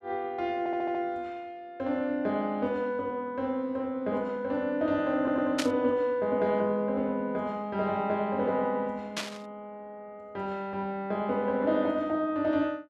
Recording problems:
audio stuttering; at 0.5 s and at 5 s
burst of static; at 5.5 s and at 9 s; peak +3 dB vs average level

